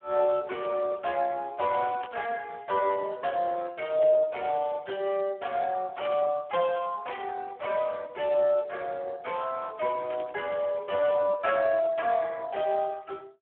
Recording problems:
telephone audio; 260 Hz to 2.8 kHz, Speex
static burst; 4 times, first at 2 s; peak -7 dB vs average level

